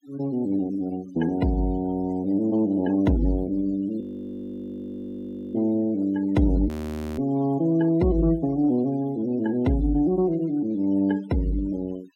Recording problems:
noise reduction artefacts; signal-to-artefact ratio 21 dB
frozen audio; at 4 s for 1.5 s and at 6.5 s

